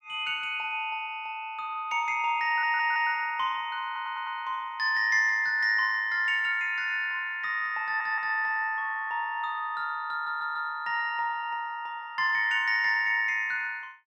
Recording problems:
stutter; 4 times, first at 2.5 s

